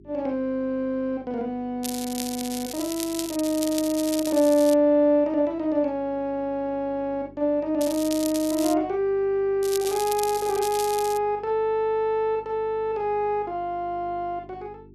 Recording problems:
electrical hum; 50 Hz, harmonics up to 400 Hz, SNR 25 dB
crackle; from 2 to 4.5 s, at 8 s and from 9.5 to 11 s; loose cable, SNR 10 dB

